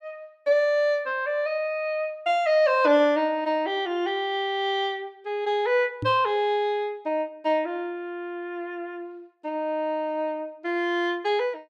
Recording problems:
microphone thump; at 6 s; peak -2 dB vs average level

